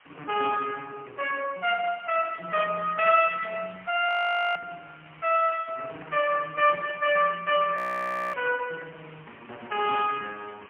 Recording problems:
phone line; 320 Hz to 2.9 kHz, AMR-NB, then MP3
background hiss; SNR 26 dB
frozen audio; at 4 s and at 8 s for 0.5 s

